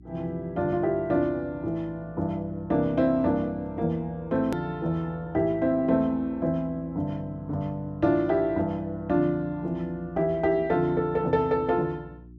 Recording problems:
hum; 60 Hz, harmonics up to 360 Hz, SNR 21 dB
click at an edit; at 4.5 s

